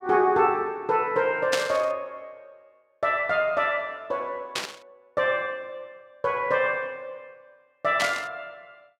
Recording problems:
burst of static; at 1.5 s, at 4.5 s and at 8 s; peak +3 dB vs average level

